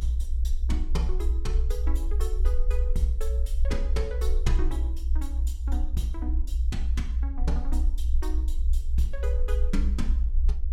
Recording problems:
hum; 50 Hz, harmonics up to 500 Hz, SNR 27 dB
rumble; below 62 Hz, SNR -9 dB

